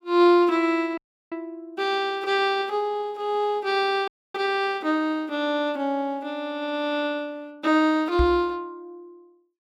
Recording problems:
dropout; at 1 s and at 4 s
microphone bump; at 8 s; peak +3 dB vs average level

